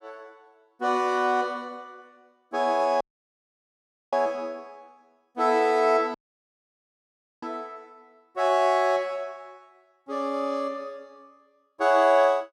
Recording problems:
dropout; at 3 s for 1 s and at 6 s for 1.5 s

